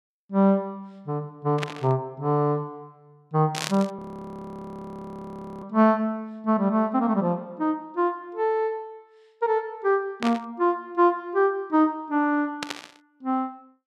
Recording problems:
static burst; 4 times, first at 1.5 s; peak -1 dB vs average level
frozen audio; at 4 s for 1.5 s

